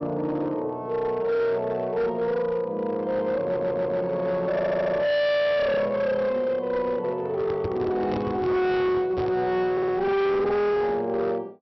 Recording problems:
treble missing; nothing above 5.7 kHz
distorted audio; hard clipping, signal-to-distortion ratio 7 dB
stutter; at 3.5 s, at 4.5 s and at 9.5 s
microphone handling noise; from 7.5 to 9.5 s; peak -2 dB vs average level

